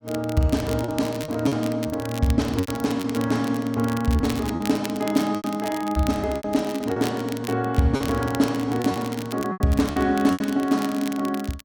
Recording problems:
crackle; vinyl, SNR 15 dB
lost packets; 9% of the sound replaced, filled with repeated pitch periods

